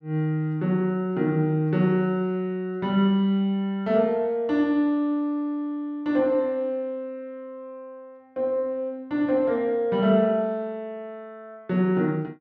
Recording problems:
none

